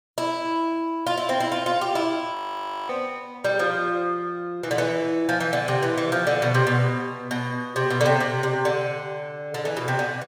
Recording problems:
audio freezing; at 2.5 s for 0.5 s

